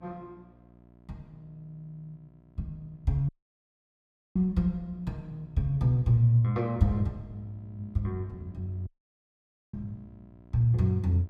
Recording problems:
hum; 60 Hz, harmonics up to 1.3 kHz, SNR 26 dB
dropout; at 3.5 s for 1 s and at 9 s for 1 s

